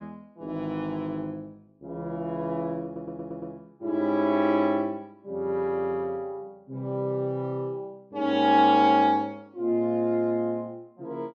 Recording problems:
audio stuttering; at 3 s

